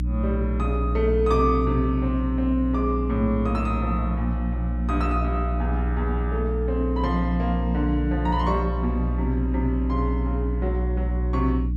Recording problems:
electrical hum; 60 Hz, harmonics up to 300 Hz, SNR 0 dB

